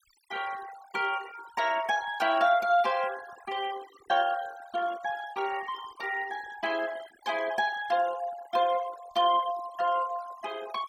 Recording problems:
denoising artefacts; signal-to-artefact ratio 16 dB

